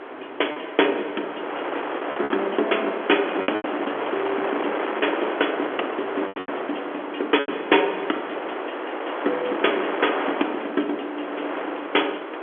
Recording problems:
phone line; 260 Hz to 3.6 kHz, G.711
wind on the microphone; below 1.4 kHz, SNR 4 dB
lost packets; 4% of the sound replaced, filled with repeated pitch periods

